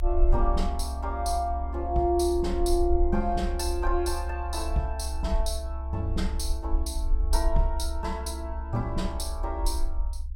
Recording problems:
low-frequency rumble; below 66 Hz, SNR 1 dB

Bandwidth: 16 kHz